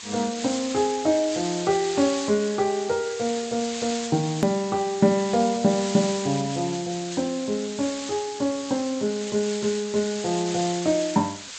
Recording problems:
lossy codec; MP3, then G.722, log-spectral distance 17 dB, nothing above 13.1 kHz
hiss; slope +3 dB per octave, SNR 9 dB
edit click; at 4.5 s

